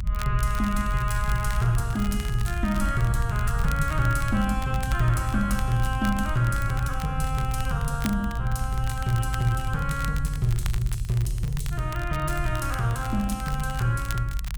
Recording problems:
rumble; below 72 Hz, SNR 3 dB
crackling; vinyl, SNR 15 dB

